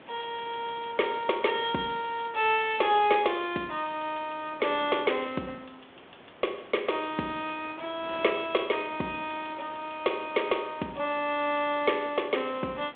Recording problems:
phone line; 220 Hz to 3.6 kHz, G.726
hiss; SNR 27 dB
wind noise; below 1.4 kHz, SNR 21 dB

